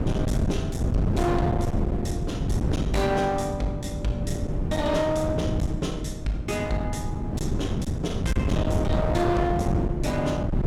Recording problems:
distorted audio; hard clipping, uneven, signal-to-distortion ratio 7 dB
wind on the microphone; below 250 Hz, SNR 0 dB

